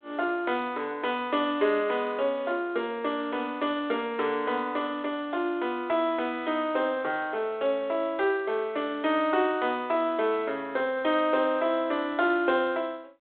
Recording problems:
phone line; 280 Hz to 3.8 kHz, G.726

